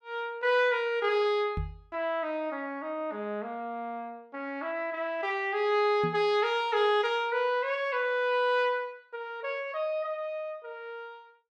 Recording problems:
microphone bump; at 1.5 s and at 6 s; peak -1 dB vs average level

